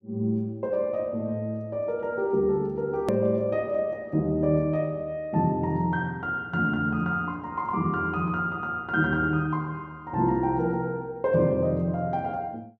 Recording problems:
hard cut with a click; at 3 s

